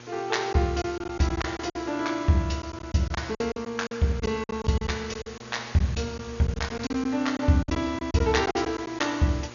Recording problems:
treble cut off; nothing above 6.9 kHz
codec artefacts; G.722, log-spectral distance 9 dB
hum; 60 Hz, harmonics up to 1.2 kHz, SNR 21 dB
hiss; slope -2 dB per octave, SNR 18 dB
packet loss; 11% of the sound replaced, filled with silence

